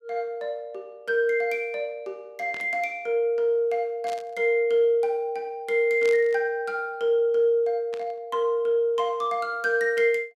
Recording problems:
static burst; 4 times, first at 2.5 s; peak -10 dB vs average level

